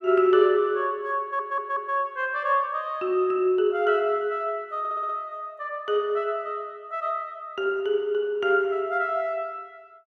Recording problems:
audio stuttering; at 1 s and at 5 s

